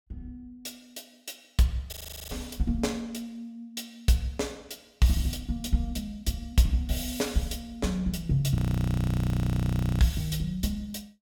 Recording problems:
frozen audio; at 2 s and at 8.5 s for 1.5 s

